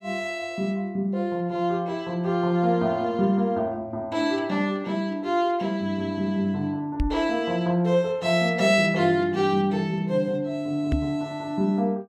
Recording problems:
microphone thump; at 7 s and at 11 s; peak +3 dB vs average level

